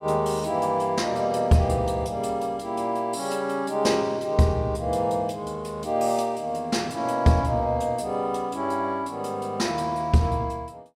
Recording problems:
none

